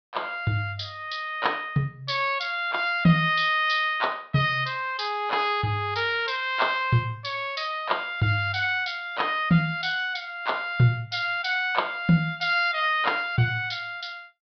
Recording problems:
treble missing; nothing above 5.5 kHz

